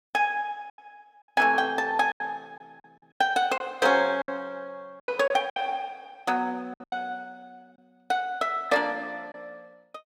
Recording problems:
packet loss; 7% of the sound replaced, filled with silence

